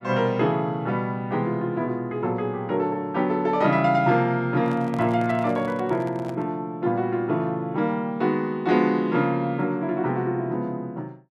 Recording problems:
handling noise; from 4.5 to 6.5 s; peak -9 dB vs average level

